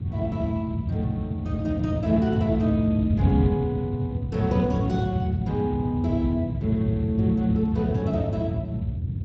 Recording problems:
lossy compression; Speex, log-spectral distance 2 dB, nothing above 16 kHz
wind on the microphone; below 150 Hz, SNR 2 dB

